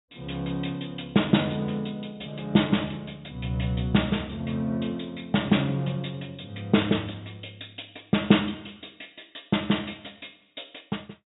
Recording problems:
treble missing; nothing above 4 kHz

